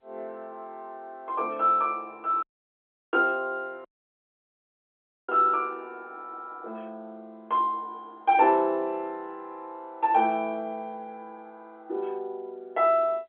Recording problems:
phone line; 280 Hz to 3.6 kHz, G.711
audio cutting out; at 2.5 s for 0.5 s and at 4 s for 1.5 s

